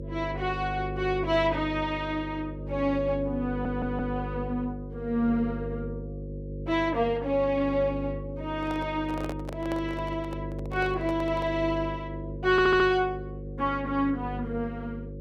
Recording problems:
hum; 50 Hz, harmonics up to 550 Hz, SNR 8 dB
stutter; at 3.5 s and at 13 s
microphone handling noise; from 8.5 to 12 s; peak -5 dB vs average level

